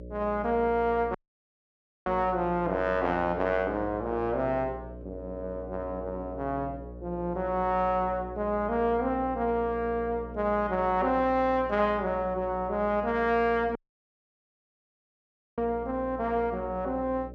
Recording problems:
electrical hum; 60 Hz, harmonics up to 600 Hz, SNR 14 dB
audio cutting out; at 1 s for 1 s and at 14 s for 2 s

